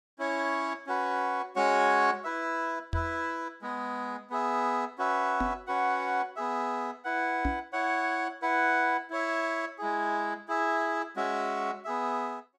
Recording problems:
microphone bump; at 3 s, at 5.5 s and at 7.5 s; peak +2 dB vs average level

